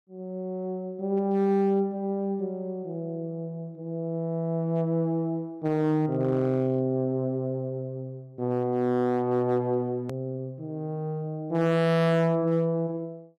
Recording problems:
distorted audio; hard clipping, signal-to-distortion ratio 12 dB
edit click; at 10 s

